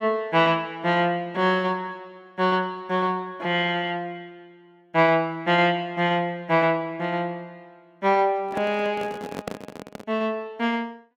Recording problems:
microphone handling noise; from 8.5 to 10 s; peak -3 dB vs average level

